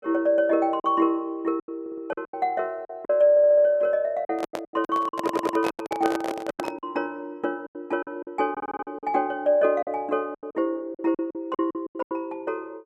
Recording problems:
lost packets; 14% of the sound replaced, filled with silence
stutter; 4 times, first at 2 s
microphone handling noise; from 4.5 to 7 s; peak +1 dB vs average level

